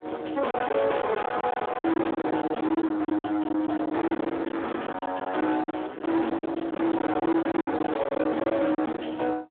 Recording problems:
telephone audio; 280 Hz to 3.7 kHz, Speex
distortion; soft clipping, signal-to-distortion ratio 8 dB
packet loss; 15% of the sound replaced, filled with silence

